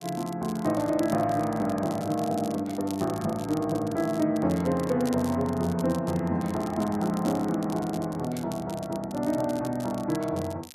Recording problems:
crackling; vinyl, SNR 18 dB

